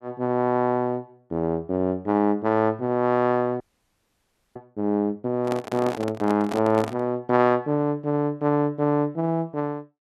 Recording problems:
audio freezing; at 3.5 s for 1 s
microphone handling noise; from 5.5 to 7 s; peak -3 dB vs average level

